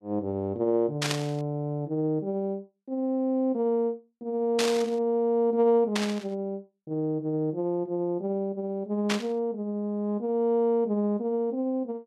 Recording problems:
burst of static; 4 times, first at 1 s; peak +4 dB vs average level

